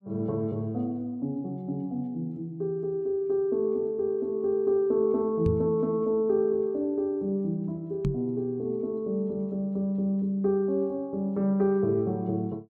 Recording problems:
microphone bump; at 5.5 s and at 8 s; peak +3 dB vs average level

